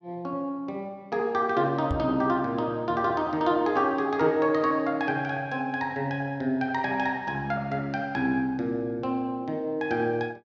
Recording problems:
microphone bump; at 2 s; peak +1 dB vs average level

